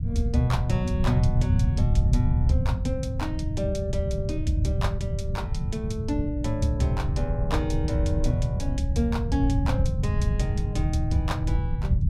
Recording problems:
rumble; below 120 Hz, SNR -2 dB

